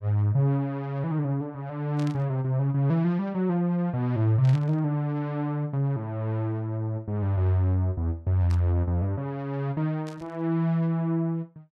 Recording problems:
burst of static; 4 times, first at 2 s; peak -13 dB vs average level

